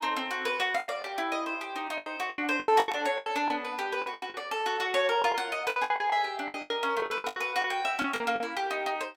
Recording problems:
lost packets; 15% of the sound replaced, filled with the last packet

